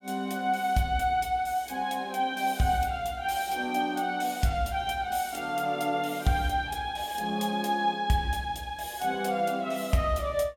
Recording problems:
none

